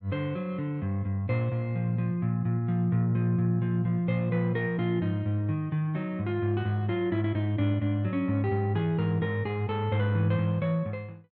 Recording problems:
none

